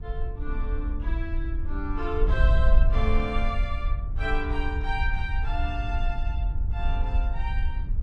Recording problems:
wind on the microphone; below 60 Hz, SNR -5 dB

